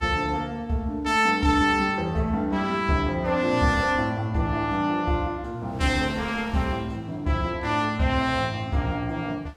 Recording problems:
wind on the microphone; below 1.6 kHz, SNR 23 dB

